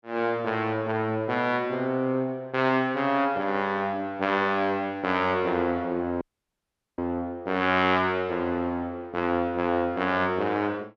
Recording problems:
dropout; at 6 s for 1 s

